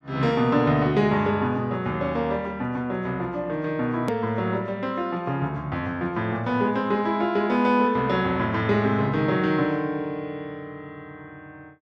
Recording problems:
hard cut with a click; at 4 s

